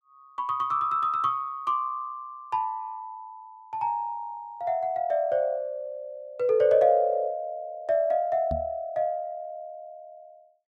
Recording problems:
microphone thump; at 8.5 s; peak -3 dB vs average level

